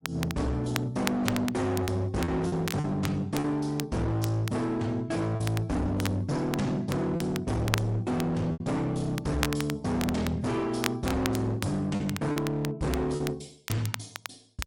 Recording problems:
codec artefacts; MP3, log-spectral distance 2 dB, nothing above 11 kHz
distorted audio; hard clipping, signal-to-distortion ratio 6 dB
crackling; vinyl, SNR 10 dB
lost packets; 3% of the sound replaced, filled with repeated pitch periods

